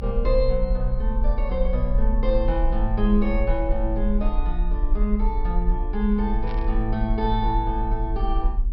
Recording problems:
low-pass filter; nothing above 5.6 kHz
hum; 60 Hz, harmonics up to 720 Hz, SNR 19 dB
rumble; below 44 Hz, strongest tone 32 Hz, SNR 0 dB
burst of static; at 6.5 s; peak -12 dB vs average level

